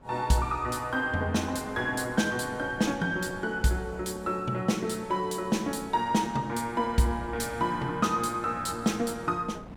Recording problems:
wind noise; below 450 Hz, SNR 19 dB

